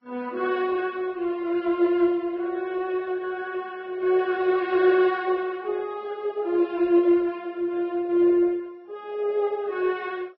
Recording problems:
codec artefacts; MP2, then Vorbis, log-spectral distance 2 dB, nothing above 5.5 kHz

